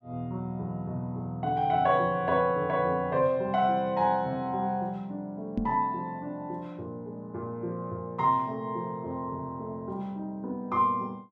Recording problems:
knock on the microphone; at 5.5 s; peak +5 dB vs average level

